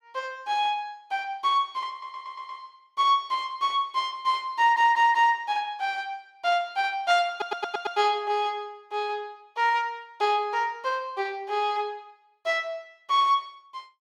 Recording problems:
audio stuttering; at 2 s, at 4.5 s and at 7.5 s

